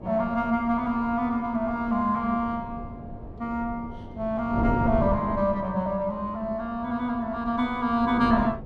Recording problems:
wind on the microphone; below 340 Hz, SNR 10 dB

